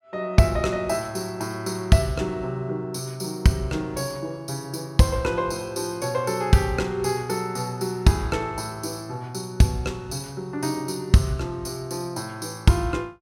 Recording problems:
none

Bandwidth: 16.5 kHz